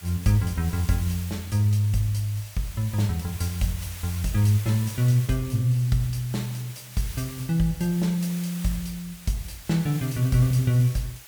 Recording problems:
background hiss; slope +1 dB per octave, SNR 15 dB

